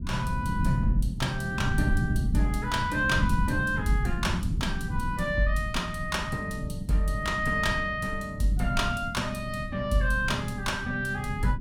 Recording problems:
rumble; below 170 Hz, SNR 4 dB

